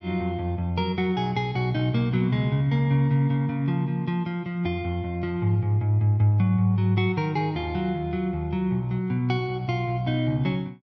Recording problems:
none

